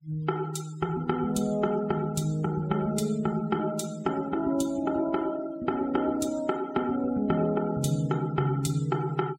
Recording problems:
denoising artefacts; signal-to-artefact ratio 21 dB

